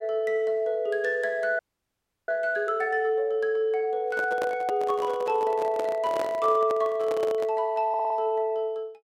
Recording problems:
frozen audio; at 1.5 s for 0.5 s
handling noise; from 4 to 7.5 s; peak -3 dB vs average level
stutter; at 8 s

